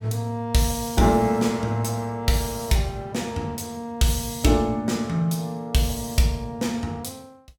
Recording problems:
none

